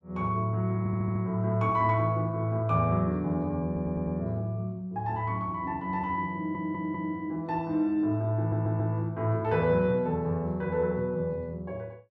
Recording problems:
stutter; 4 times, first at 1 s

